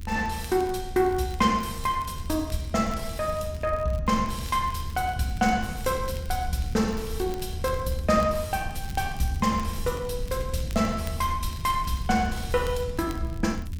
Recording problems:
low-frequency rumble; below 90 Hz, SNR 8 dB
crackling; vinyl, SNR 22 dB

